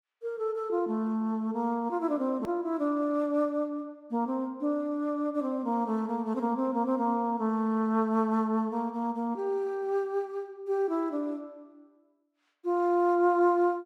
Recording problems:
edit click; at 2.5 s

